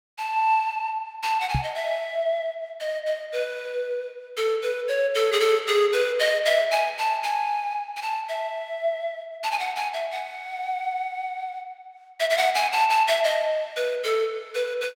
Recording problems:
knock on the microphone; at 1.5 s; peak +3 dB vs average level

